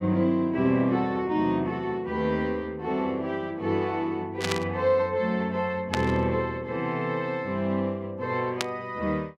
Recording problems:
static burst; at 4.5 s, at 6 s and at 8.5 s; peak +3 dB vs average level

